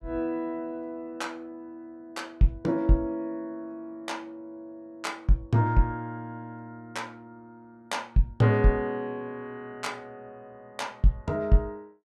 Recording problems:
none

